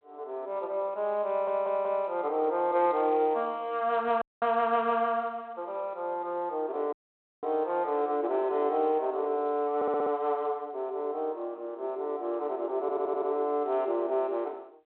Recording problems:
phone line; 260 Hz to 3.3 kHz, G.726
stutter; at 1.5 s, at 10 s and at 13 s
audio cutting out; at 4 s and at 7 s for 0.5 s

